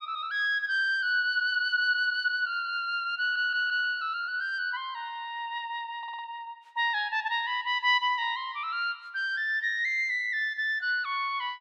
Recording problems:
audio stuttering; at 3 s and at 6 s

